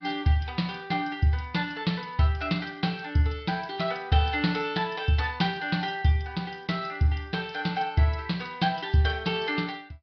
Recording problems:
low-pass filter; nothing above 5.2 kHz
lossy codec; MP3, then MP2, log-spectral distance 4 dB

